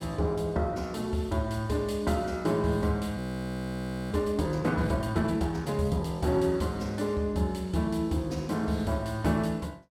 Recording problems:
audio freezing; at 3 s for 1 s

